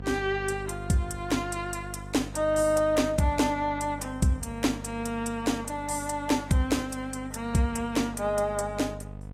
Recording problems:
lossy compression; AAC, log-spectral distance 2 dB
hum; 50 Hz, harmonics up to 750 Hz, SNR 13 dB

